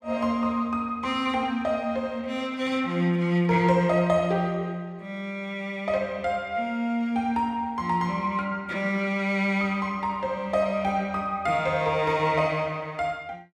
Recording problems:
none

